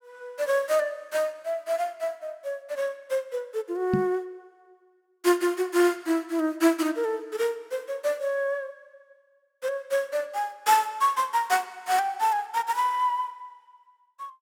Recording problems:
knock on the microphone; at 4 s; peak +5 dB vs average level

